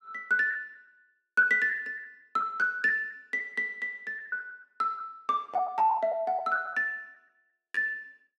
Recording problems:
packet loss; 6% of the sound replaced, filled with the last packet

